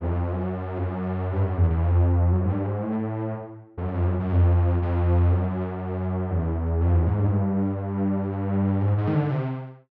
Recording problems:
none

